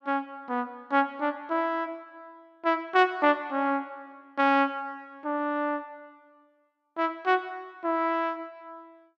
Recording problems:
none

